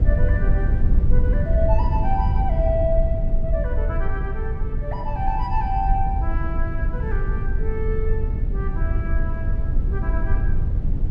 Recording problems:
rumble; below 74 Hz, SNR -6 dB

